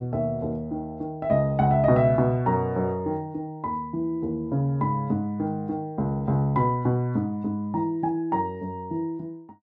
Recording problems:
treble missing; nothing above 7.8 kHz

